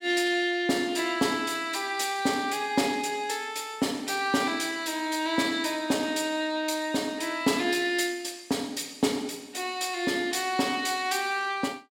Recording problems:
none

